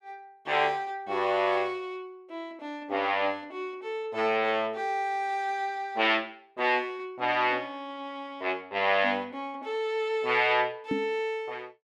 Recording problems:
microphone bump; at 11 s; peak +2 dB vs average level

